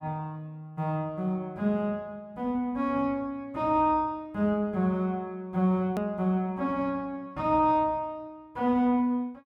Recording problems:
hard cut with a click; at 6 s

